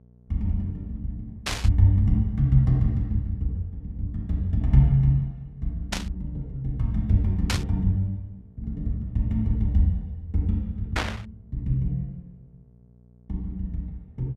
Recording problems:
electrical hum; 60 Hz, harmonics up to 660 Hz, SNR 28 dB
burst of static; 4 times, first at 1.5 s; peak +3 dB vs average level

